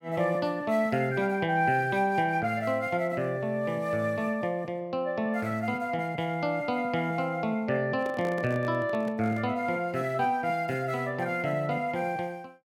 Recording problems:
handling noise; from 8 to 9.5 s; peak -7 dB vs average level

